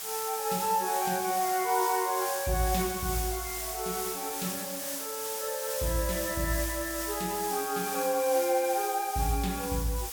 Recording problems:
background hiss; SNR 4 dB

